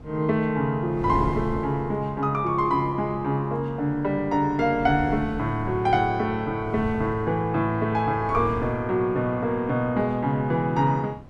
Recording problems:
wind on the microphone; below 260 Hz, SNR 14 dB

